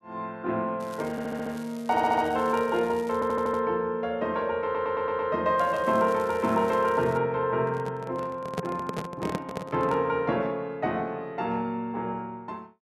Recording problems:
crackle; from 1 to 3.5 s and from 5.5 to 7 s; loose cable, SNR 23 dB
stutter; 4 times, first at 1 s
handling noise; from 7.5 to 10 s; peak +1 dB vs average level

